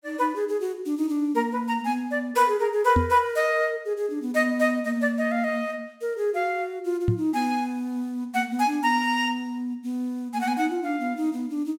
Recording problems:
knock on the microphone; at 3 s and at 7 s; peak +6 dB vs average level

